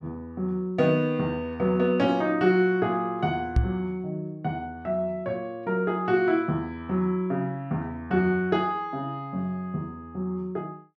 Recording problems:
microphone bump; at 3.5 s; peak +7 dB vs average level

